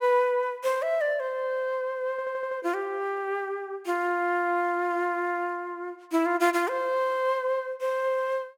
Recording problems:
audio stuttering; at 2 s

